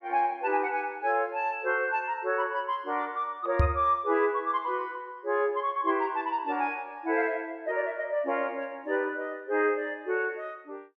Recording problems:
microphone thump; at 3.5 s; peak +8 dB vs average level

